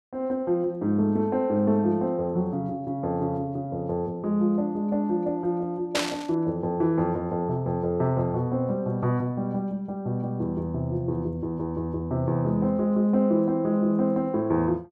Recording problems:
burst of static; at 6 s; peak +3 dB vs average level

